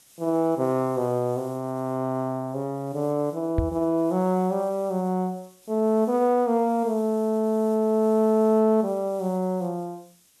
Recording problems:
background hiss; SNR 28 dB
knock on the microphone; at 3.5 s; peak +3 dB vs average level

